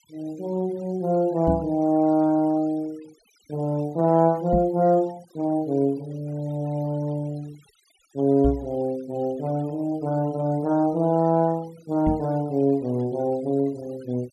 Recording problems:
denoising artefacts; signal-to-artefact ratio 26 dB
knock on the microphone; 4 times, first at 1.5 s; peak +2 dB vs average level

